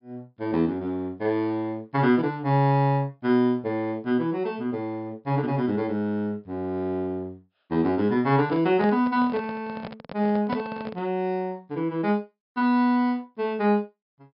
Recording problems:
low-pass filter; nothing above 5.5 kHz
microphone handling noise; from 8.5 to 11 s; peak -2 dB vs average level

